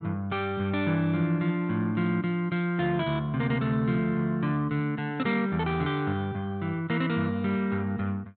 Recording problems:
treble cut off; nothing above 4 kHz

